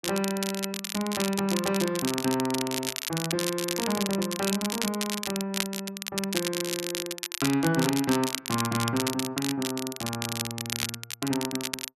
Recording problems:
crackle; vinyl, SNR 2 dB

